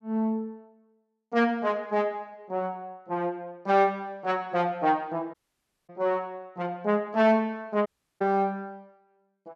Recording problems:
dropout; at 5.5 s for 0.5 s and at 8 s

